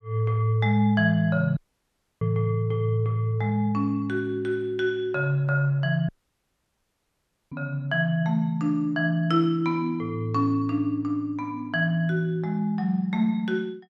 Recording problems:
dropout; at 1.5 s for 0.5 s and at 6 s for 1.5 s

